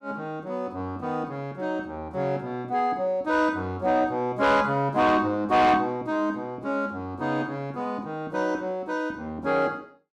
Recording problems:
distortion; soft clipping, signal-to-distortion ratio 11 dB

